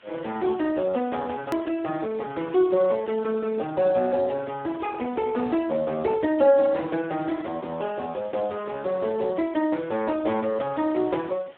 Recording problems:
phone line; 170 Hz to 3.6 kHz, Speex
hiss; SNR 27 dB
click at an edit; at 1.5 s

